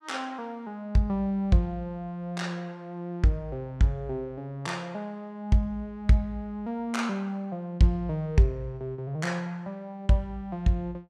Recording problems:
none

